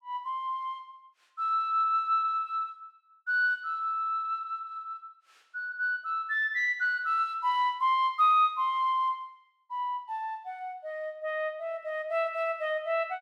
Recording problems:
none

